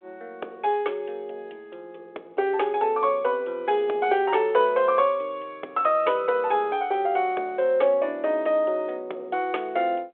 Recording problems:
telephone audio; 320 Hz to 3.6 kHz, G.726

